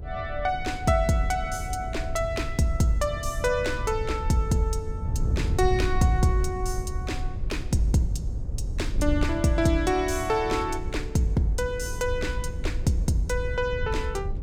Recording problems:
rumble; below 130 Hz, SNR 16 dB
wind noise; below 88 Hz, SNR 6 dB

